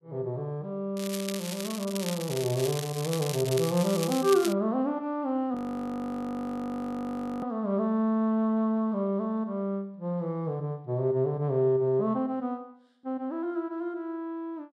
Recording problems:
crackle; from 1 to 4.5 s; loose cable, SNR 8 dB
audio freezing; at 5.5 s for 2 s

